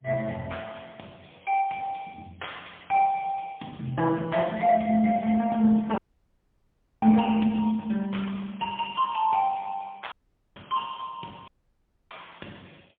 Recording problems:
phone line; 150 Hz to 3.4 kHz, AMR-NB, then MP3
dropout; at 6 s for 1 s, at 10 s and at 11 s for 0.5 s

